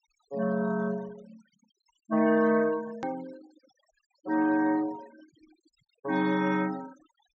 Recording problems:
treble cut off; nothing above 8 kHz
denoising artefacts; signal-to-artefact ratio 22 dB
edit click; at 3 s

